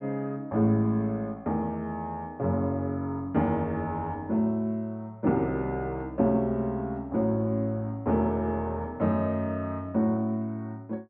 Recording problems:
none

